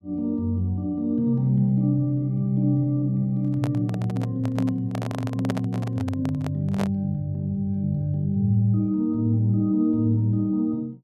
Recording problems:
microphone handling noise; from 3.5 to 7 s; peak -2 dB vs average level

